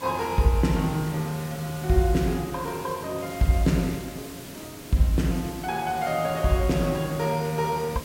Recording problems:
background hiss; SNR 14 dB

